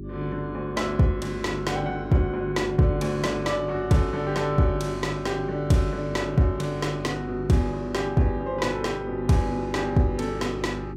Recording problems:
hum; 50 Hz, harmonics up to 400 Hz, SNR 10 dB

